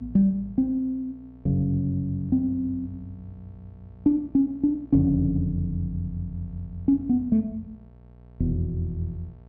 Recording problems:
electrical hum; 60 Hz, harmonics up to 900 Hz, SNR 25 dB

